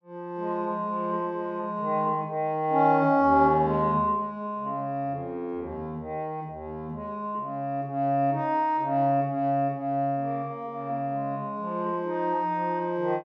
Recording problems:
none

